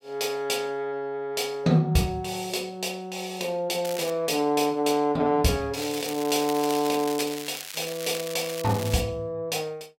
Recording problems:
crackling; at 4 s and from 5.5 to 9 s; loose cable, SNR 10 dB

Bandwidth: 16 kHz